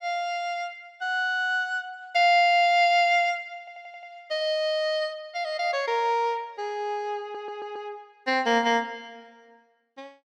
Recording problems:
audio stuttering; at 3.5 s and at 7 s

